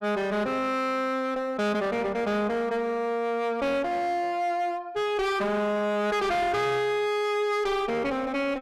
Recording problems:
distortion; hard clipping, uneven, signal-to-distortion ratio 6 dB

